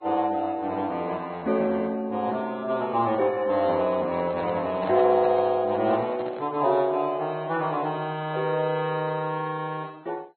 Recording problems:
lossy compression; MP2, then Vorbis, log-spectral distance 2 dB, nothing above 4.2 kHz
microphone handling noise; from 4 to 6.5 s; peak -5 dB vs average level

